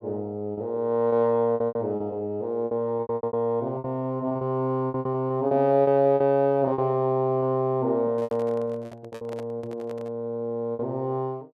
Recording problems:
packet loss; 14% of the sound replaced, filled with repeated pitch periods
handling noise; from 8 to 10 s; peak -10 dB vs average level

